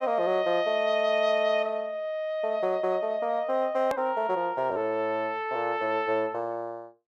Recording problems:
click at an edit; at 4 s

